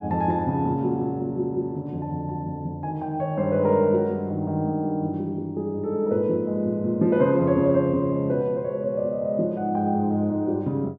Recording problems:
none

